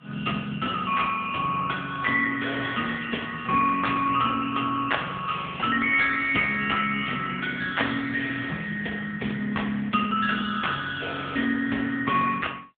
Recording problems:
phone line; 240 Hz to 3.5 kHz, AMR-NB

